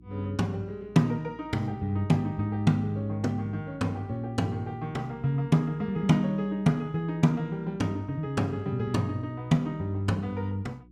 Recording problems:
electrical hum; 60 Hz, harmonics up to 360 Hz, SNR 25 dB

